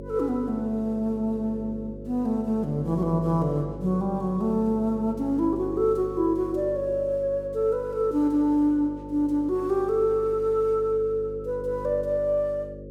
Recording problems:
hum; 50 Hz, harmonics up to 550 Hz, SNR 13 dB

